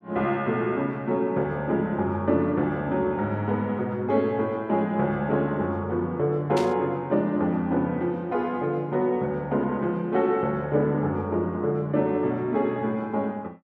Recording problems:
burst of static; at 6.5 s; peak -4 dB vs average level

